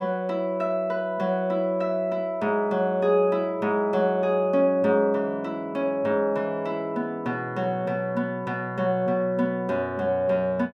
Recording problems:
none

